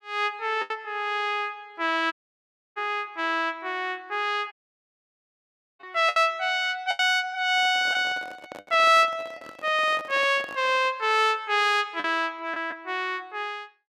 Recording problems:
lost packets; 3% of the sound replaced, filled with the last packet
audio cutting out; at 2 s for 0.5 s and at 4.5 s for 1.5 s
microphone handling noise; from 7.5 to 11 s; peak -12 dB vs average level

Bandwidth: 15 kHz